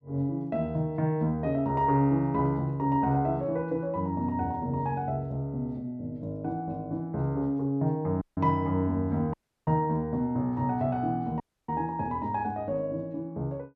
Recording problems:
audio cutting out; at 8 s, at 9.5 s and at 11 s

